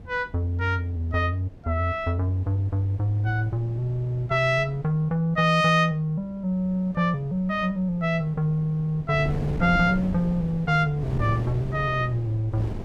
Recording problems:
wind on the microphone; below 270 Hz, SNR 13 dB

